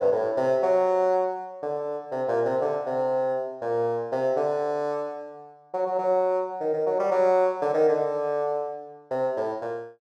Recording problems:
none

